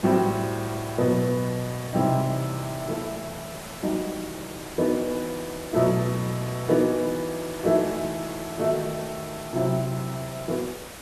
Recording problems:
hiss; slope -4 dB per octave, SNR 12 dB

